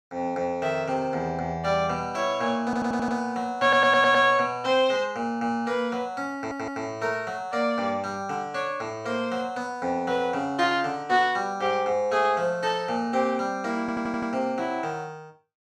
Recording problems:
stutter; 4 times, first at 2.5 s

